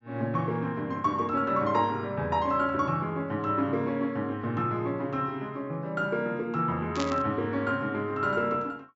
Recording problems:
treble missing; nothing above 8 kHz
burst of static; at 7 s; peak -2 dB vs average level

